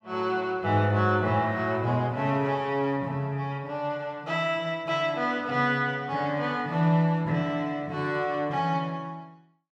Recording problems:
none

